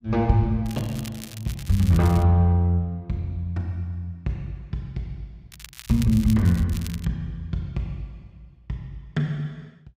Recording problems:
crackle; from 0.5 to 2 s and from 5.5 to 7 s; loose cable, SNR 17 dB

